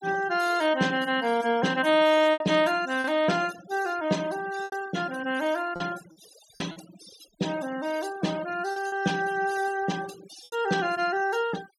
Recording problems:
denoising artefacts; signal-to-artefact ratio 17 dB
packet loss; 4% of the sound replaced, filled with repeated pitch periods

